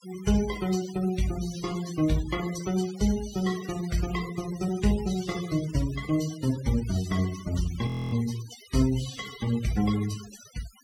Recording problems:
denoising artefacts; signal-to-artefact ratio 14 dB
frozen audio; at 8 s

